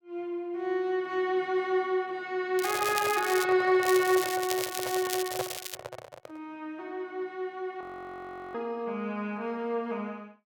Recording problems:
crackle; at 2.5 s and from 4 to 6 s; loose cable, SNR 6 dB
microphone handling noise; from 2.5 to 6.5 s; peak 0 dB vs average level
audio freezing; at 8 s for 0.5 s

